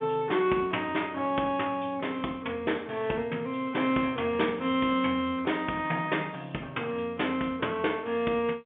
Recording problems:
phone line; 240 Hz to 3.5 kHz, G.711

